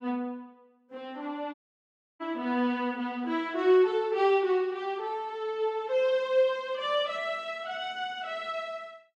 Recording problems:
audio cutting out; at 1.5 s for 0.5 s

